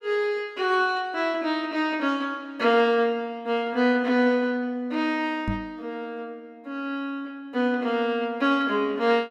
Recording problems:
microphone thump; at 5.5 s; peak 0 dB vs average level

